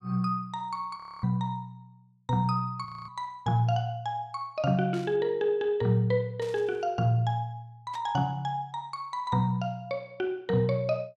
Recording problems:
audio freezing; at 1 s and at 3 s
static burst; at 5 s, at 6.5 s and at 8 s; peak -14 dB vs average level

